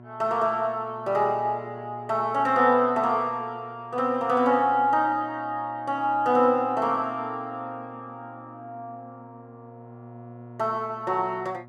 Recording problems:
electrical hum; 60 Hz, harmonics up to 1.3 kHz, SNR 22 dB

